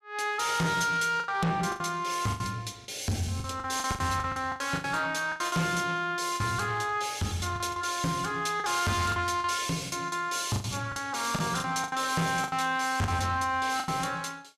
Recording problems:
distortion; soft clipping, signal-to-distortion ratio 11 dB
packet loss; 11% of the sound replaced, filled with the last packet

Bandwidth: 14.5 kHz